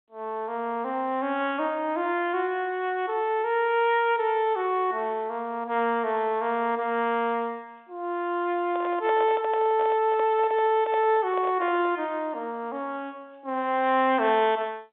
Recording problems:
phone line; 240 Hz to 3.7 kHz, G.711
microphone handling noise; from 8.5 to 12 s; peak -5 dB vs average level

